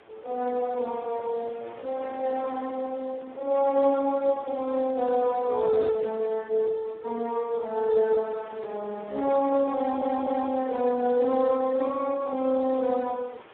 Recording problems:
phone line; 300 Hz to 2.2 kHz, Speex
wind noise; below 1.9 kHz, SNR 23 dB
audio stuttering; at 10 s

